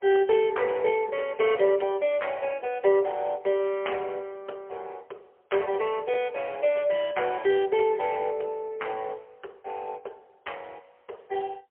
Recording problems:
phone line; 340 Hz to 3.2 kHz, AMR-NB, then MP3

